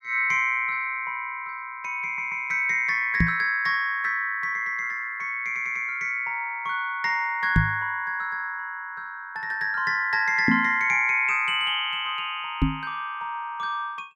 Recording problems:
audio stuttering; at 2 s and at 5.5 s
knock on the microphone; 4 times, first at 3 s; peak +7 dB vs average level

